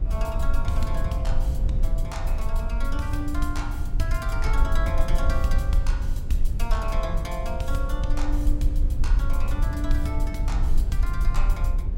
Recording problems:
rumble; below 52 Hz, strongest tone 18 Hz, SNR -6 dB

